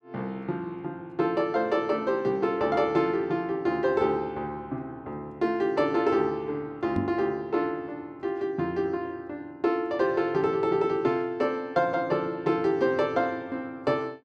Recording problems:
microphone bump; at 7 s; peak +3 dB vs average level

